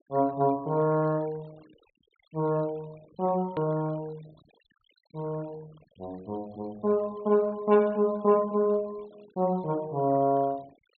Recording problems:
treble cut off; nothing above 4.2 kHz
denoising artefacts; signal-to-artefact ratio 28 dB
click at an edit; at 3.5 s

